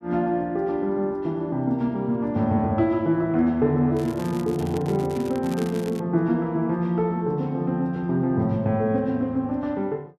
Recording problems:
crackling; from 4 to 6 s; loose cable, SNR 20 dB

